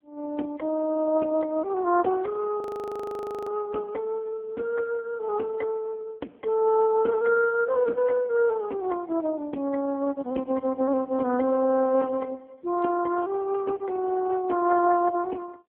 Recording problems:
telephone audio; 220 Hz to 2 kHz, AMR-NB
audio freezing; at 2.5 s for 1 s

